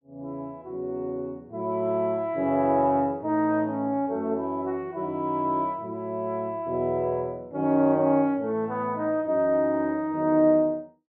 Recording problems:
none

